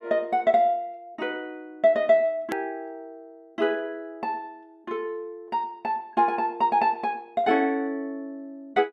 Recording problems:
hard cut with a click; at 2.5 s

